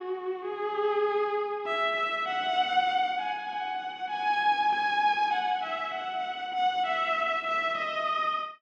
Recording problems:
none

